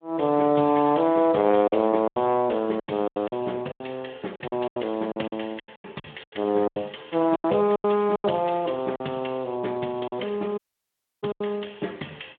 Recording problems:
phone line; 130 Hz to 3.6 kHz, Speex
lost packets; 12% of the sound replaced, filled with silence
audio cutting out; at 11 s for 0.5 s

